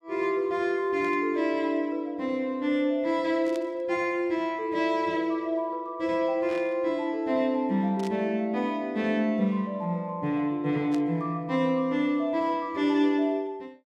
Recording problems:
static burst; 5 times, first at 1 s; peak -12 dB vs average level

